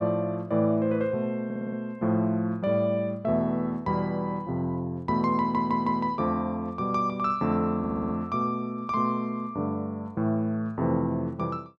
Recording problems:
audio stuttering; at 1.5 s, at 5.5 s and at 8 s

